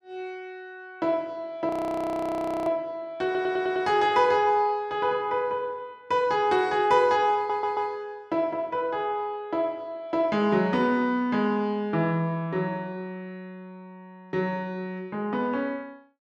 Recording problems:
frozen audio; at 1.5 s for 1 s
audio stuttering; at 3.5 s and at 7.5 s

